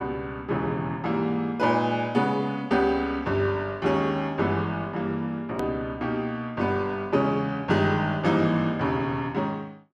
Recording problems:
edit click; at 5.5 s

